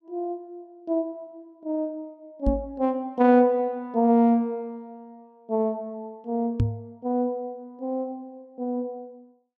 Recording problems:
microphone thump; at 2.5 s and at 6.5 s; peak +6 dB vs average level

